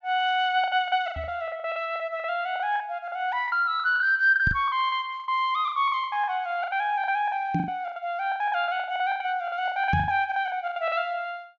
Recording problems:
low-pass filter; nothing above 7.4 kHz
packet loss; 20% of the sound replaced, filled with the last packet
knock on the microphone; 4 times, first at 1 s; peak +3 dB vs average level

